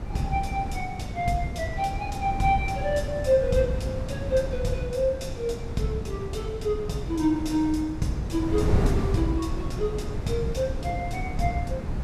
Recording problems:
wind on the microphone; below 190 Hz, SNR 4 dB

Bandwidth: 13.5 kHz